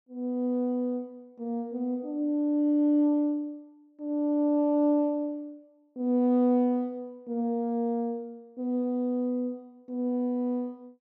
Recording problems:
none

